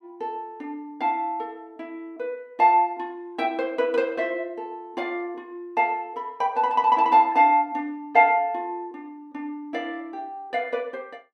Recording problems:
none

